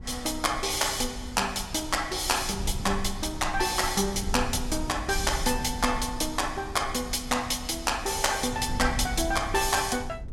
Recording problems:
wind noise; below 92 Hz, SNR 11 dB

